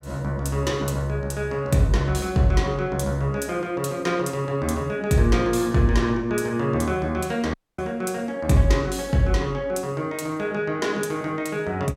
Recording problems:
audio cutting out; at 7.5 s

